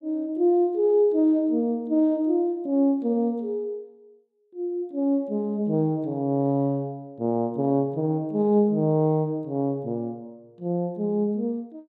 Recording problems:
none

